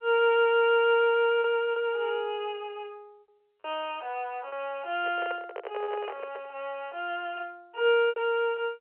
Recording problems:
phone line; 370 Hz to 3.2 kHz, G.711
packet loss; 3% of the sound replaced, filled with repeated pitch periods
microphone handling noise; from 5 to 6.5 s; peak -6 dB vs average level

